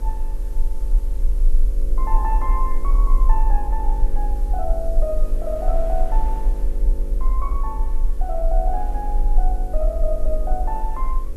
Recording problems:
hum; 50 Hz, harmonics up to 550 Hz, SNR 10 dB
background hiss; SNR 23 dB
low-frequency rumble; below 38 Hz, strongest tone 22 Hz, SNR -6 dB
wind noise; below 1.2 kHz, SNR 21 dB

